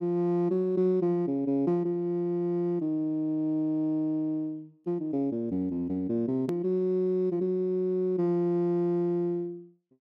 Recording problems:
edit click; at 6.5 s

